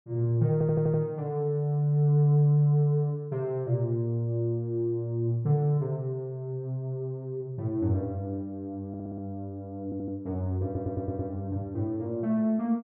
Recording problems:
stutter; 4 times, first at 0.5 s

